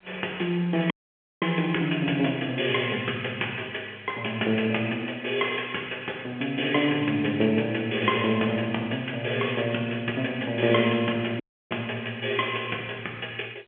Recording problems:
phone line; 300 Hz to 3.4 kHz, G.711
dropout; at 1 s for 0.5 s and at 11 s

